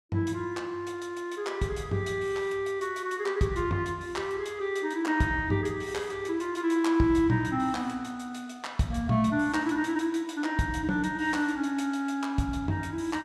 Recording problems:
none

